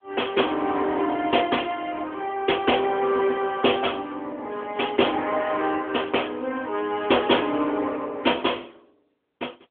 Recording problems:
phone line; 260 Hz to 3.4 kHz, AMR-NB

